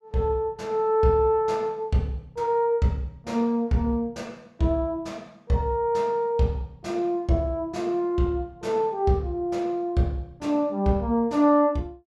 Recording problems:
none

